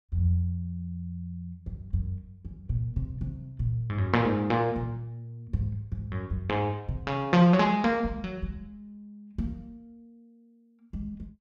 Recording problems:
none

